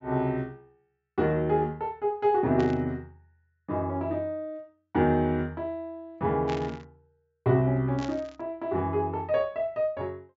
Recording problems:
treble missing; nothing above 7.4 kHz
burst of static; at 2.5 s, at 6.5 s and at 8 s; peak -7 dB vs average level

